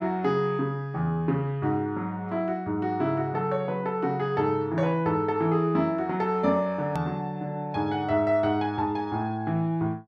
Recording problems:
click at an edit; at 7 s

